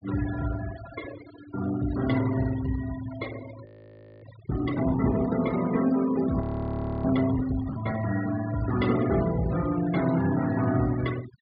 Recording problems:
treble missing; nothing above 4.9 kHz
noise reduction artefacts; signal-to-artefact ratio 13 dB
audio freezing; at 3.5 s for 0.5 s and at 6.5 s for 0.5 s

